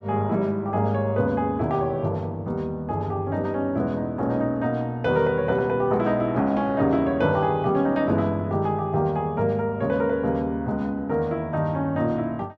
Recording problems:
none

